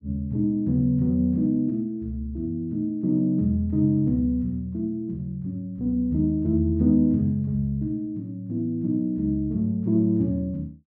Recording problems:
none

